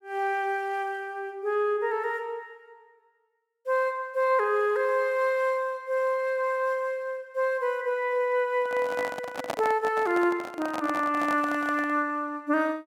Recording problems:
handling noise; from 8.5 to 12 s; peak 0 dB vs average level

